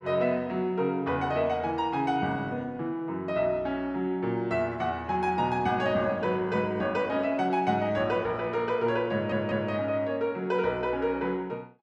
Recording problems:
stutter; at 9 s

